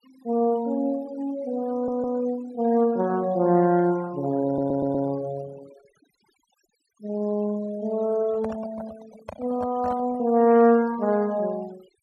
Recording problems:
denoising artefacts; signal-to-artefact ratio 23 dB
stutter; at 1.5 s and at 4.5 s
handling noise; from 8.5 to 10 s; peak -8 dB vs average level

